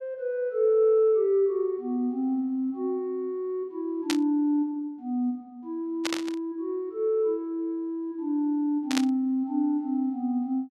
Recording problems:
static burst; at 4 s, at 6 s and at 9 s; peak +2 dB vs average level

